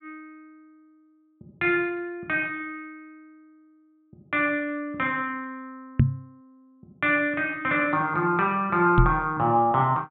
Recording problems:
treble missing; nothing above 4 kHz
knock on the microphone; at 6 s and at 9 s; peak +8 dB vs average level

